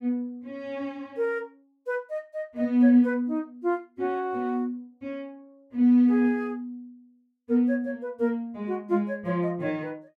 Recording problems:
none

